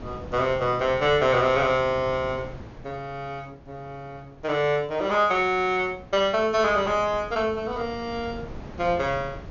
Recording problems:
treble missing; nothing above 6.9 kHz
wind noise; below 470 Hz, SNR 18 dB

